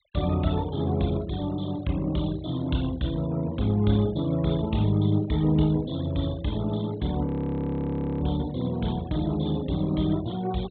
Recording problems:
treble cut off; nothing above 4 kHz
noise reduction artefacts; signal-to-artefact ratio 21 dB
audio freezing; at 7.5 s for 1 s

